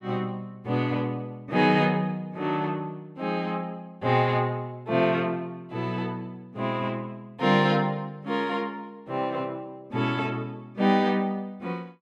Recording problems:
none

